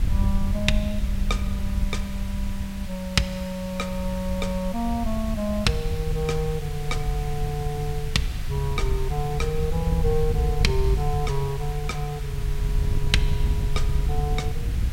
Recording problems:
hiss; SNR 13 dB
wind on the microphone; below 76 Hz, SNR 1 dB

